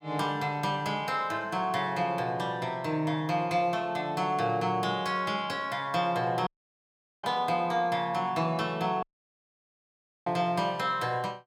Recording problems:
dropout; at 6.5 s for 1 s and at 9 s for 1 s

